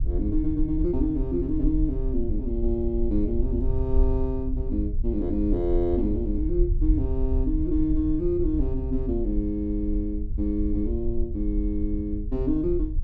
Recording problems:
low-frequency rumble; below 60 Hz, SNR 2 dB

